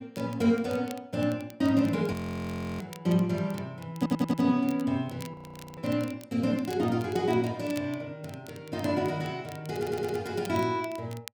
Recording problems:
crackling; vinyl, SNR 21 dB
frozen audio; at 2 s for 0.5 s and at 5.5 s
stutter; at 4 s and at 10 s

